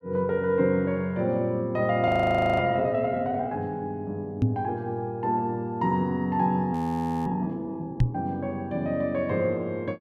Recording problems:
frozen audio; at 2 s for 0.5 s and at 6.5 s for 0.5 s
microphone thump; at 4.5 s and at 8 s; peak +7 dB vs average level

